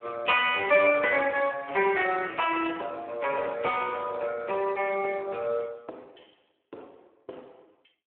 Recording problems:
telephone audio; 340 Hz to 3.2 kHz, Speex

